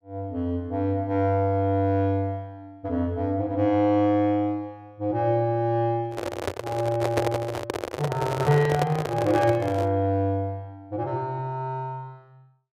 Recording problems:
microphone handling noise; from 6 to 10 s; peak +3 dB vs average level

